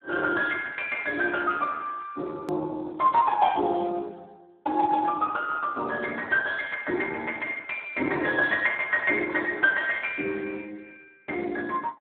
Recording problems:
telephone audio; 260 Hz to 3.7 kHz, Speex
hard cut with a click; at 2.5 s

